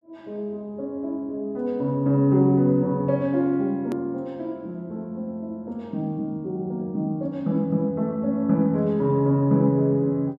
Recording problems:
edit click; at 4 s

